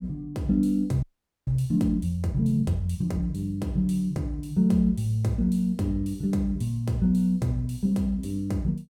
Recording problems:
frozen audio; at 1 s

